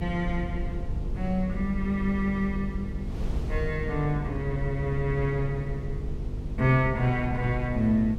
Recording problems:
mains hum; 50 Hz, harmonics up to 500 Hz, SNR 10 dB
low-frequency rumble; below 68 Hz, SNR 10 dB
wind noise; below 98 Hz, SNR 12 dB

